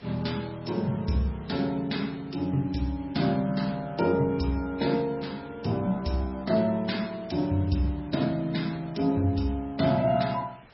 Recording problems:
codec artefacts; MP3, log-spectral distance 4 dB, nothing above 5.5 kHz
background hiss; SNR 24 dB

